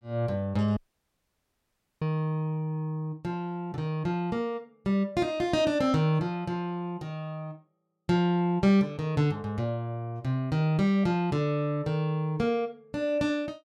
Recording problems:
dropout; at 1 s for 1 s

